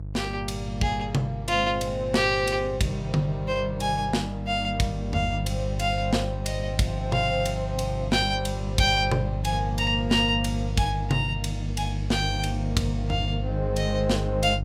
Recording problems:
hum; 50 Hz, harmonics up to 350 Hz, SNR 5 dB

